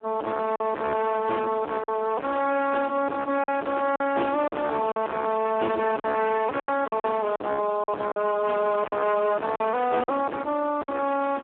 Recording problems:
telephone audio; 260 Hz to 3 kHz, Speex
distortion; soft clipping, signal-to-distortion ratio 3 dB
packet loss; 6% of the sound replaced, filled with silence

